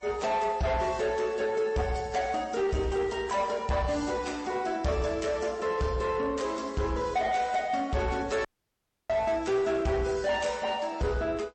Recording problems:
lossy codec; MP3, then MP3, log-spectral distance 3 dB, nothing above 8.2 kHz
distortion; soft clipping, signal-to-distortion ratio 11 dB
audio cutting out; at 8.5 s for 0.5 s

